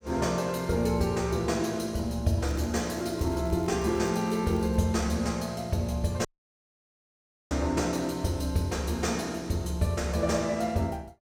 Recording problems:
crackling; from 2.5 to 5 s; loose cable, SNR 25 dB
dropout; at 6.5 s for 1.5 s

